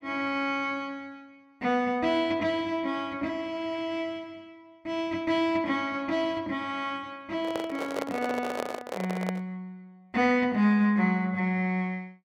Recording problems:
microphone handling noise; from 7.5 to 9.5 s; peak 0 dB vs average level

